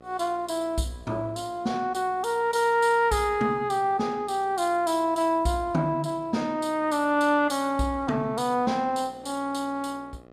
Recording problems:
hum; 60 Hz, harmonics up to 2 kHz, SNR 25 dB

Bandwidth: 14.5 kHz